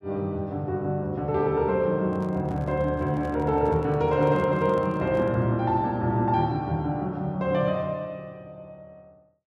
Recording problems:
handling noise; from 2 to 5.5 s; peak -11 dB vs average level

